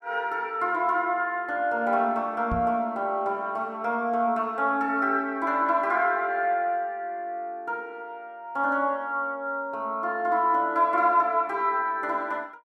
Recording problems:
knock on the microphone; at 2.5 s; peak -2 dB vs average level

